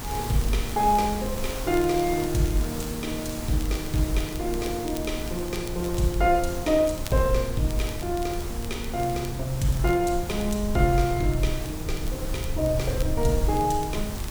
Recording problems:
background hiss; slope -4 dB per octave, SNR 11 dB
low-frequency rumble; below 78 Hz, SNR 9 dB
crackle; vinyl, SNR 21 dB

